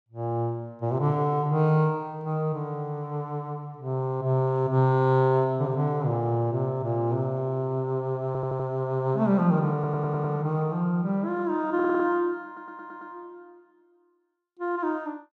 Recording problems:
stutter; 4 times, first at 8.5 s

